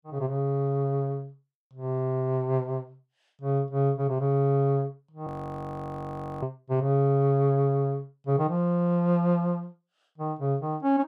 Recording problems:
frozen audio; at 5.5 s for 1 s

